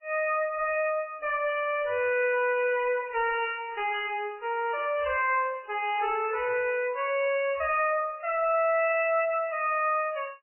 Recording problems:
lossy compression; MP3, then AAC, log-spectral distance 4 dB, nothing above 2.7 kHz
distortion; soft clipping, signal-to-distortion ratio 9 dB

